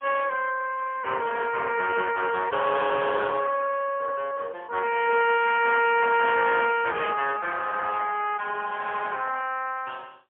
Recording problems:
phone line; 370 Hz to 3.3 kHz, AMR-NB, then MP3

